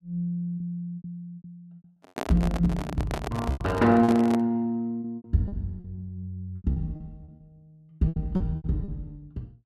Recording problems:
packet loss; 13% of the sound replaced, filled with repeated pitch periods
handling noise; from 2 to 4.5 s; peak 0 dB vs average level

